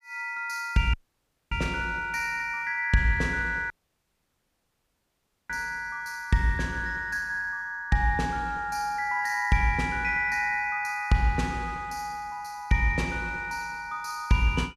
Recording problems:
dropout; at 1 s for 0.5 s and at 3.5 s for 2 s

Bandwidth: 15 kHz